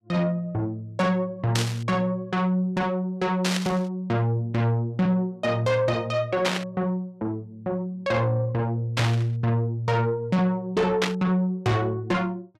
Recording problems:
distortion; soft clipping, signal-to-distortion ratio 11 dB
static burst; 5 times, first at 1.5 s; peak +4 dB vs average level

